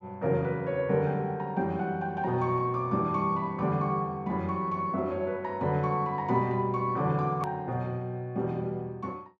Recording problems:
edit click; at 7.5 s

